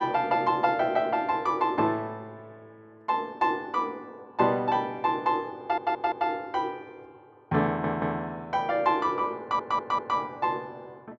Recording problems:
stutter; at 5.5 s, at 7.5 s and at 9.5 s

